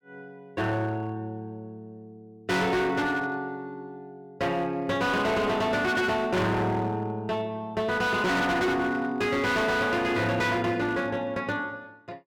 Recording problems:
distortion; hard clipping, signal-to-distortion ratio 7 dB

